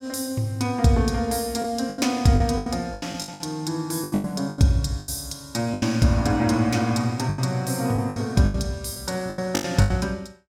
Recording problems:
lost packets; 13% of the sound replaced, filled with the last packet

